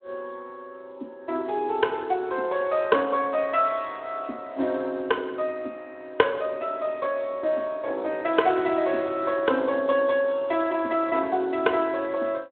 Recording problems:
telephone audio; 240 Hz to 3.7 kHz, Speex

